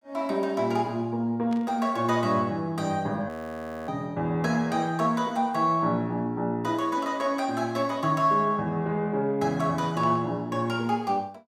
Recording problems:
burst of static; at 1.5 s and at 10 s; peak -14 dB vs average level
frozen audio; at 3.5 s for 0.5 s

